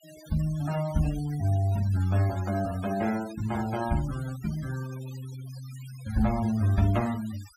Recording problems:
denoising artefacts; signal-to-artefact ratio 18 dB

